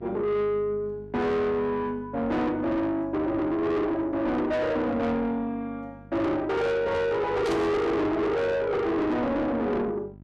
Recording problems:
distorted audio; soft clipping, signal-to-distortion ratio 7 dB
hum; 50 Hz, harmonics up to 700 Hz, SNR 20 dB
static burst; at 7.5 s; peak -7 dB vs average level

